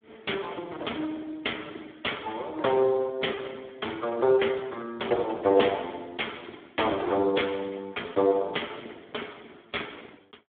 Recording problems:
telephone audio; 280 Hz to 3.3 kHz, Speex

